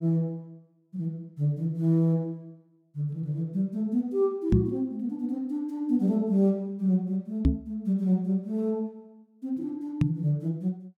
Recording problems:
microphone bump; at 4.5 s, at 7.5 s and at 10 s; peak +9 dB vs average level

